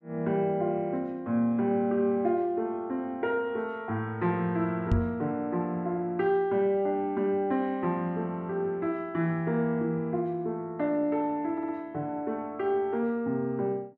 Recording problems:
microphone bump; at 5 s; peak +5 dB vs average level
stutter; at 12 s

